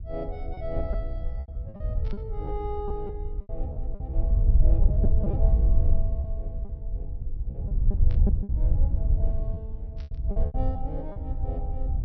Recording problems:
treble cut off; nothing above 5.9 kHz
low-frequency rumble; below 68 Hz, SNR -11 dB
lost packets; 9% of the sound replaced, filled with repeated pitch periods
static burst; at 2 s, at 8 s and at 10 s; peak -7 dB vs average level

